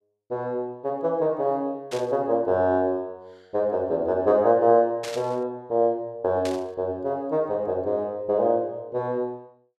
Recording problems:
burst of static; at 2 s, at 5 s and at 6.5 s; peak -6 dB vs average level

